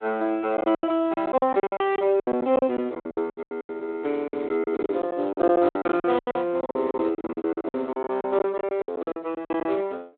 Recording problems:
telephone audio; 220 Hz to 3.6 kHz, Speex
lost packets; 22% of the sound replaced, filled with silence

